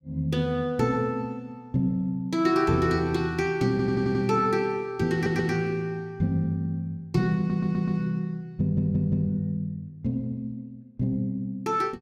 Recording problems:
stutter; 4 times, first at 3.5 s

